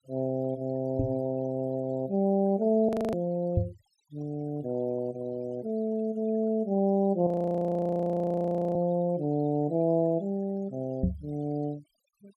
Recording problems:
noise reduction artefacts; signal-to-artefact ratio 28 dB
knock on the microphone; at 1 s, at 3.5 s and at 11 s; peak +6 dB vs average level
audio freezing; at 3 s and at 7.5 s for 1.5 s

